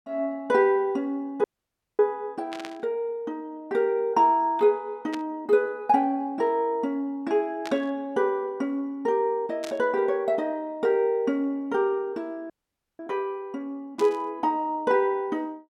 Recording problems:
audio cutting out; at 1.5 s for 0.5 s and at 13 s
static burst; 5 times, first at 2.5 s; peak -7 dB vs average level

